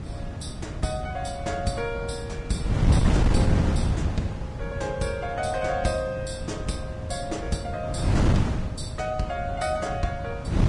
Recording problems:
lossy compression; Vorbis, log-spectral distance 3 dB
wind noise; below 200 Hz, SNR -3 dB

